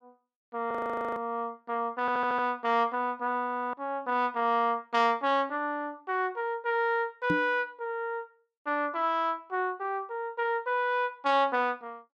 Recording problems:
frozen audio; at 0.5 s and at 3.5 s
stutter; at 2 s
microphone bump; at 7.5 s; peak +3 dB vs average level

